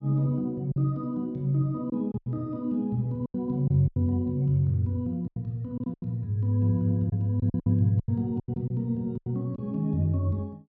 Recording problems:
packet loss; 9% of the sound replaced, filled with silence

